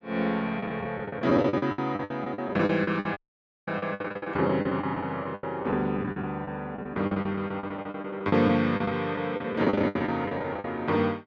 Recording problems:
lost packets; 19% of the sound replaced, filled with the last packet
dropout; at 3 s for 0.5 s

